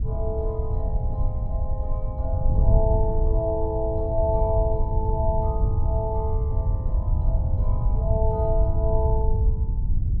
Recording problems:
wind noise; below 90 Hz, SNR -4 dB

